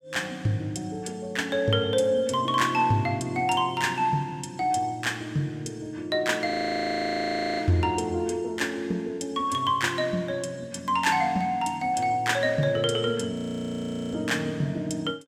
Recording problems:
audio freezing; at 6.5 s for 1 s and at 13 s for 1 s

